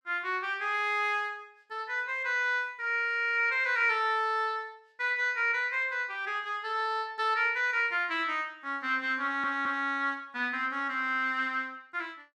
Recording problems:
audio stuttering; at 9 s

